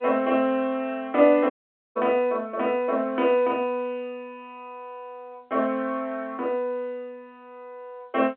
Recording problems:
telephone audio; 300 Hz to 3.3 kHz, G.711
dropout; at 1.5 s

